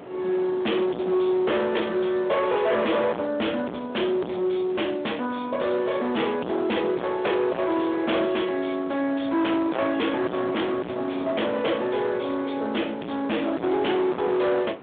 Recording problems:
phone line; 220 Hz to 3.6 kHz, Speex
distortion; hard clipping, signal-to-distortion ratio 3 dB
wind on the microphone; below 960 Hz, SNR 16 dB

